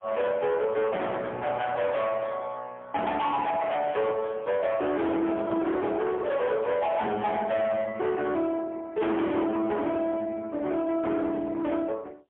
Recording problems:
phone line; 260 Hz to 3.6 kHz, AMR-NB, then MP3
distortion; hard clipping, uneven, signal-to-distortion ratio 7 dB
microphone handling noise; from 5 to 7 s; peak -2 dB vs average level

